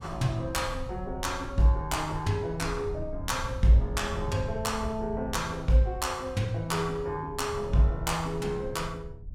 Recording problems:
wind on the microphone; below 100 Hz, SNR 11 dB

